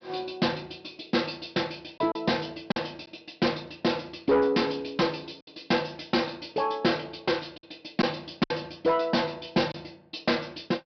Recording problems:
low-pass filter; nothing above 5.5 kHz
distorted audio; soft clipping, signal-to-distortion ratio 12 dB
lost packets; 3% of the sound replaced, filled with silence

